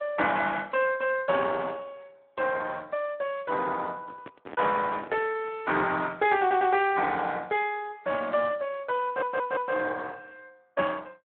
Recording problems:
telephone audio; 320 Hz to 3.6 kHz, Speex
microphone handling noise; from 4 to 5.5 s; peak -9 dB vs average level
stutter; at 6.5 s and at 9 s

